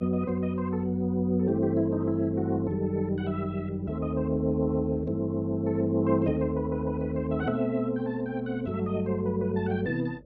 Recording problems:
electrical hum; 50 Hz, harmonics up to 600 Hz, SNR 26 dB

